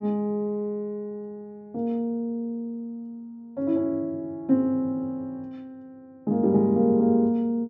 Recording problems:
treble missing; nothing above 8 kHz

